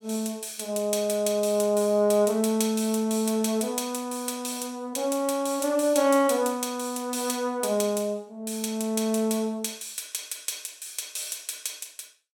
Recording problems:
none

